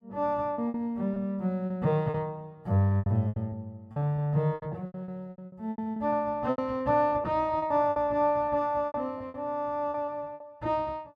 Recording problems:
lost packets; 14% of the sound replaced, filled with repeated pitch periods

